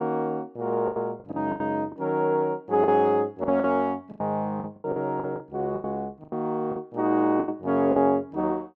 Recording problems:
packet loss; 12% of the sound replaced, filled with the last packet

